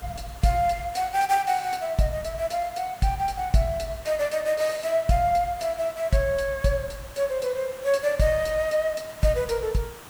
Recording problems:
background hiss; SNR 19 dB

